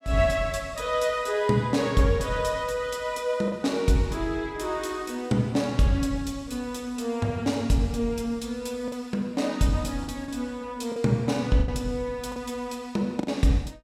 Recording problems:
packet loss; 3% of the sound replaced, filled with the last packet

